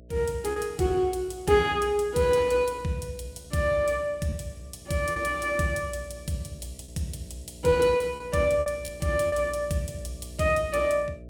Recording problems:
electrical hum; 60 Hz, harmonics up to 660 Hz, SNR 21 dB
lost packets; 4% of the sound replaced, filled with repeated pitch periods

